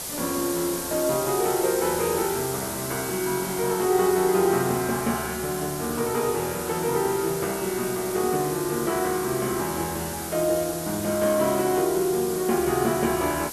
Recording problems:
hiss; SNR 7 dB

